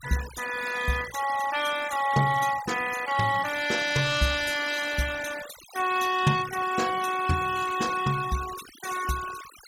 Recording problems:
denoising artefacts; signal-to-artefact ratio 12 dB

